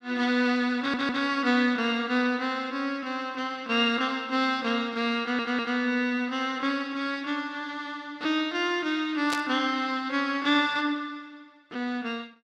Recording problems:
stutter; at 1 s and at 5 s
burst of static; at 9.5 s; peak 0 dB vs average level

